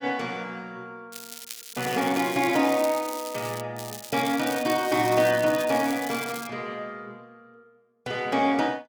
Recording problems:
crackle; from 1 to 3.5 s and from 4 to 6.5 s; loose cable, SNR 13 dB

